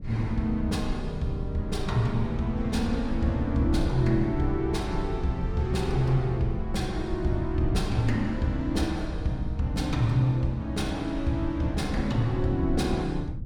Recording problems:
rumble; below 94 Hz, SNR 8 dB

